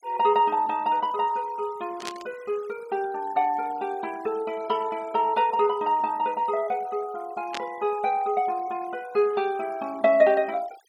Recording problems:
denoising artefacts; signal-to-artefact ratio 23 dB
burst of static; at 2 s and at 7.5 s; peak -4 dB vs average level

